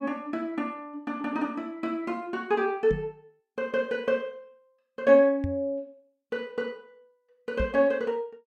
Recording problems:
microphone thump; at 3 s, at 5.5 s and at 7.5 s; peak 0 dB vs average level

